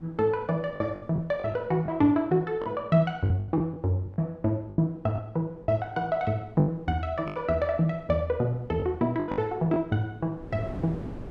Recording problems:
wind noise; below 370 Hz, SNR 19 dB
packet loss; 9% of the sound replaced, filled with the last packet

